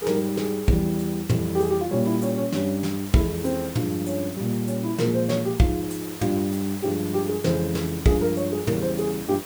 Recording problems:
background hiss; slope -3 dB per octave, SNR 13 dB

